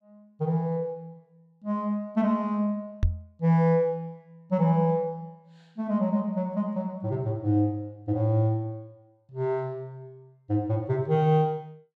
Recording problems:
knock on the microphone; at 3 s; peak +5 dB vs average level

